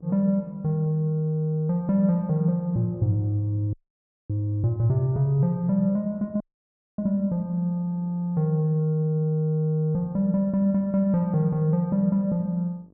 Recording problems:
hum; 50 Hz, harmonics up to 750 Hz, SNR 30 dB
dropout; at 3.5 s for 0.5 s and at 6.5 s for 0.5 s

